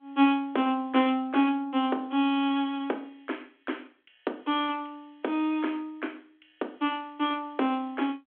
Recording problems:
phone line; 220 Hz to 3.4 kHz, G.726

